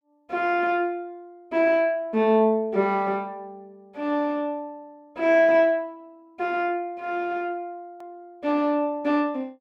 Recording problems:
hard cut with a click; at 8 s

